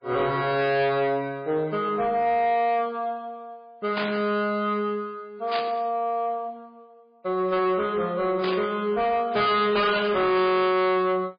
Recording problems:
lossy compression; MP3, log-spectral distance 2 dB, nothing above 4.8 kHz
distortion; soft clipping, signal-to-distortion ratio 8 dB
burst of static; 4 times, first at 4 s; peak -3 dB vs average level

